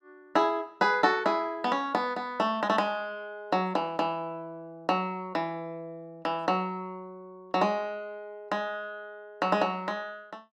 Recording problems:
none

